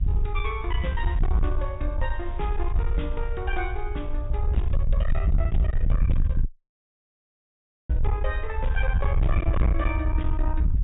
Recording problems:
treble missing; nothing above 4 kHz
distorted audio; soft clipping, signal-to-distortion ratio 6 dB
rumble; below 70 Hz, SNR -6 dB
wind noise; below 1.3 kHz, SNR 21 dB
dropout; at 6.5 s for 1.5 s

